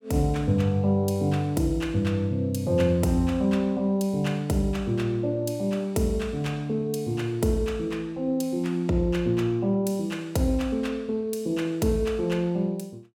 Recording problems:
none

